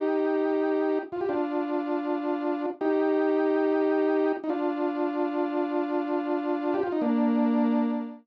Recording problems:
none

